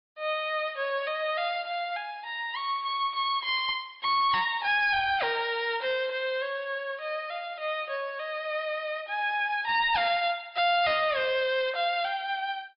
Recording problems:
treble cut off; nothing above 4.9 kHz
lossy compression; MP3, log-spectral distance 2 dB
distortion; hard clipping, signal-to-distortion ratio 10 dB

